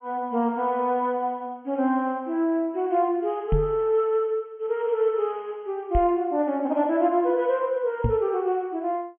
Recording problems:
treble cut off; nothing above 3.3 kHz
microphone thump; at 3.5 s, at 6 s and at 8 s; peak +4 dB vs average level

